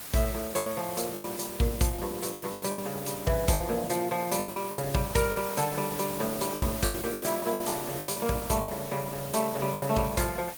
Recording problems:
lossy compression; Opus, log-spectral distance 8 dB
hiss; slope -1 dB per octave, SNR 8 dB
lost packets; 12% of the sound replaced, filled with the last packet

